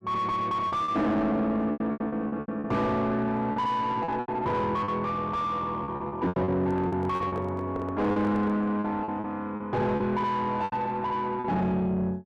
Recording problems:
distortion; soft clipping, signal-to-distortion ratio 7 dB
lost packets; 11% of the sound replaced, filled with repeated pitch periods
handling noise; from 6.5 to 8.5 s; peak -3 dB vs average level

